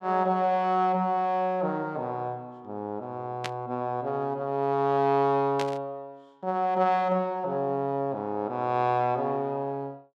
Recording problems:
static burst; at 3.5 s and at 5.5 s; peak -1 dB vs average level

